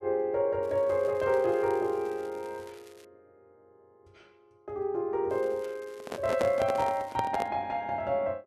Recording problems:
crackling; from 0.5 to 3 s and from 5.5 to 7 s; loose cable, SNR 27 dB
handling noise; from 6 to 7.5 s; peak +1 dB vs average level

